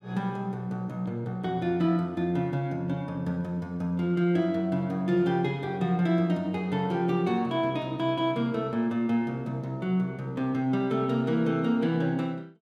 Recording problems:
none

